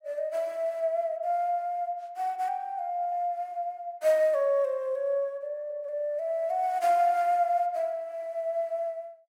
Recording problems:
none

